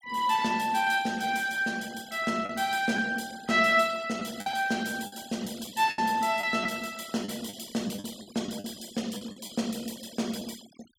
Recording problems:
denoising artefacts; signal-to-artefact ratio 20 dB
packet loss; 6% of the sound replaced, filled with the last packet

